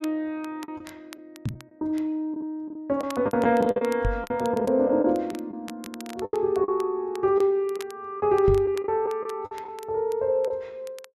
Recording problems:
crackle; vinyl, SNR 23 dB
packet loss; 8% of the sound replaced, filled with the last packet
microphone bump; at 1.5 s, at 4 s and at 8.5 s; peak +3 dB vs average level

